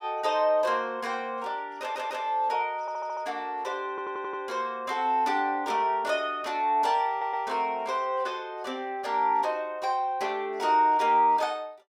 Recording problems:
audio stuttering; 4 times, first at 2 s

